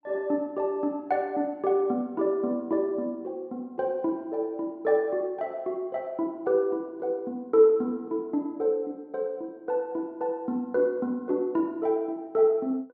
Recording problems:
none

